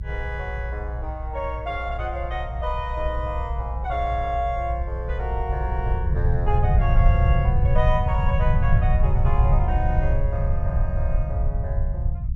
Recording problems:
low-frequency rumble; below 94 Hz, SNR -5 dB

